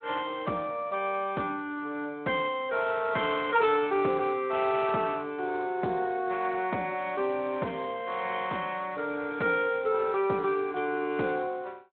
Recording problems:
phone line; 190 Hz to 3.5 kHz, Speex

